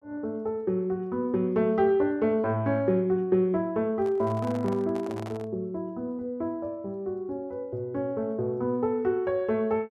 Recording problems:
microphone handling noise; from 4 to 5.5 s; peak -9 dB vs average level

